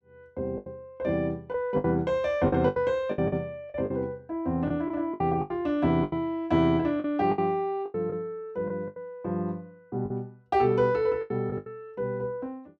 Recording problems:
packet loss; 10% of the sound replaced, filled with the last packet

